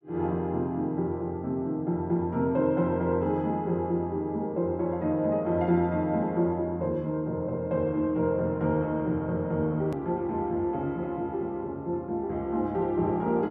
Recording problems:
hard cut with a click; at 10 s

